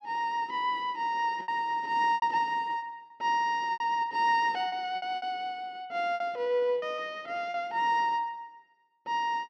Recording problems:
packet loss; 7% of the sound replaced, filled with repeated pitch periods

